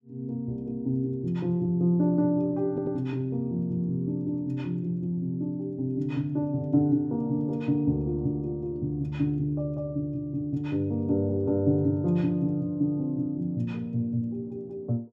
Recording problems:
stutter; at 2.5 s

